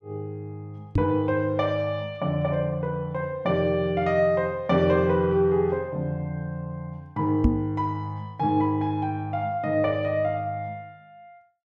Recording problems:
microphone thump; at 1 s and at 7.5 s; peak +8 dB vs average level

